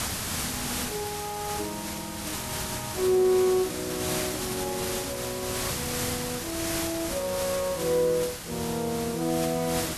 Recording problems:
hiss; slope -1 dB per octave, SNR 2 dB

